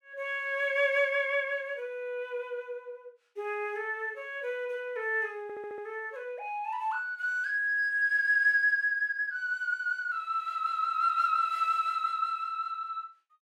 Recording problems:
audio stuttering; at 5.5 s

